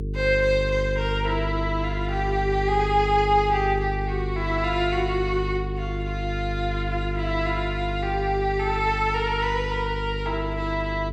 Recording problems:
hum; 50 Hz, harmonics up to 450 Hz, SNR 5 dB

